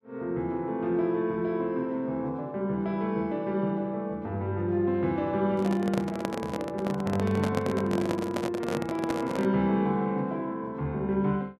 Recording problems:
handling noise; from 5.5 to 9.5 s; peak +2 dB vs average level

